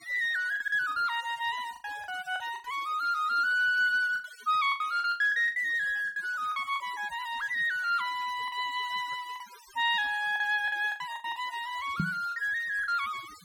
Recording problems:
denoising artefacts; signal-to-artefact ratio 20 dB
packet loss; 10% of the sound replaced, filled with the last packet
knock on the microphone; at 12 s; peak +3 dB vs average level

